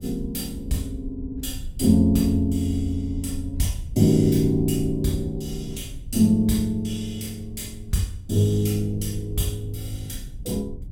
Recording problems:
rumble; below 90 Hz, SNR 14 dB

